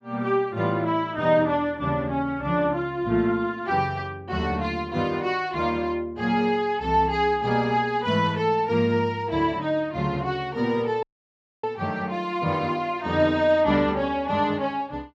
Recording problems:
audio cutting out; at 11 s for 0.5 s

